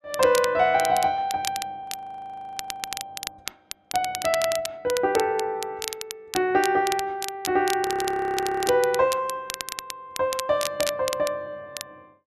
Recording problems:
crackling; vinyl, SNR 9 dB
audio freezing; at 2 s for 1 s and at 8 s for 1 s

